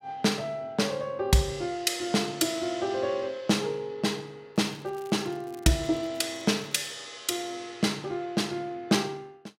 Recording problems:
crackle; from 4.5 to 7 s; loose cable, SNR 26 dB

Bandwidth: 16 kHz